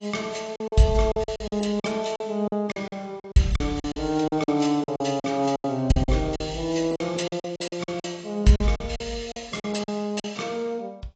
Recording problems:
codec artefacts; AAC, log-spectral distance 4 dB, nothing above 7.8 kHz
lost packets; 14% of the sound replaced, filled with silence

